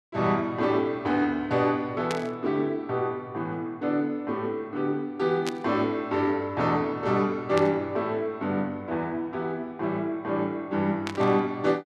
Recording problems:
burst of static; 4 times, first at 2 s; peak -2 dB vs average level

